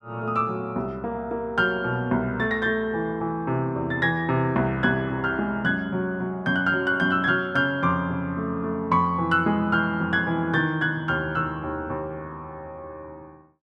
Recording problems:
none

